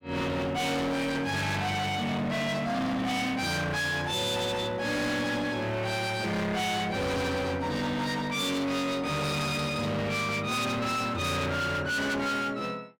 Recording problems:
distortion; hard clipping, uneven, signal-to-distortion ratio 5 dB

